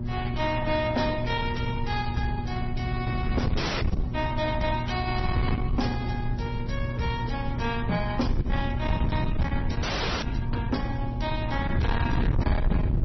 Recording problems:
lossy codec; Opus, then MP3, log-spectral distance 3 dB, nothing above 5.8 kHz
distorted audio; soft clipping, signal-to-distortion ratio 11 dB
hum; 60 Hz, harmonics up to 600 Hz, SNR 4 dB
wind noise; below 140 Hz, SNR 1 dB
audio freezing; at 3.5 s and at 10 s

